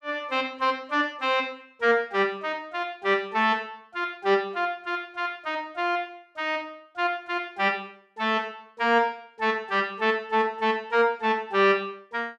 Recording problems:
none

